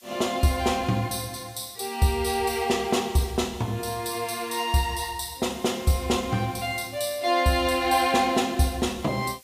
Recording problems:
background hiss; slope +3 dB per octave, SNR 25 dB

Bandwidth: 15 kHz